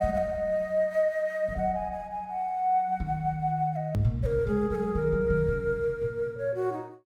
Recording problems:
click at an edit; at 4 s

